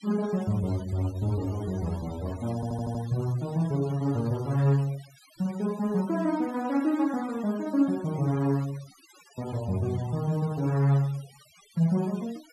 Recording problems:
denoising artefacts; signal-to-artefact ratio 21 dB
stutter; at 2.5 s

